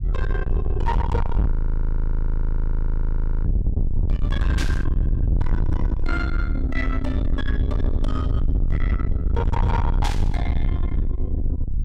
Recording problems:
distortion; soft clipping, signal-to-distortion ratio 6 dB
low-frequency rumble; below 82 Hz, SNR -6 dB
frozen audio; at 1.5 s for 2 s
burst of static; at 4.5 s and at 10 s; peak +3 dB vs average level

